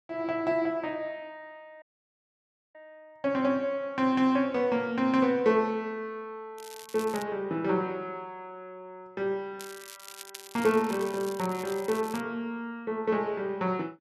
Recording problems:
dropout; at 2 s for 1 s
crackle; at 6.5 s and from 9.5 to 12 s; loose cable, SNR 16 dB

